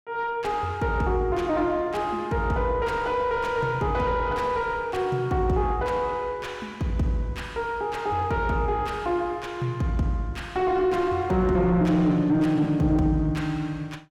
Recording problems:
distortion; soft clipping, signal-to-distortion ratio 10 dB

